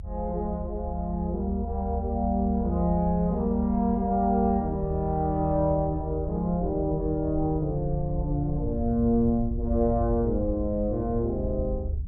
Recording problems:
low-frequency rumble; below 76 Hz, SNR 7 dB

